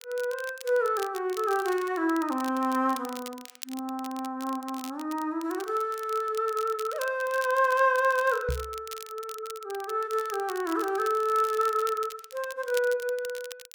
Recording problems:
crackle; vinyl, SNR 16 dB
microphone thump; at 8.5 s; peak 0 dB vs average level

